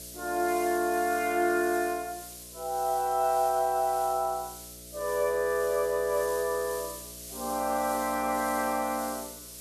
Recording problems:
electrical hum; 60 Hz, harmonics up to 660 Hz, SNR 24 dB
background hiss; slope +5 dB per octave, SNR 12 dB

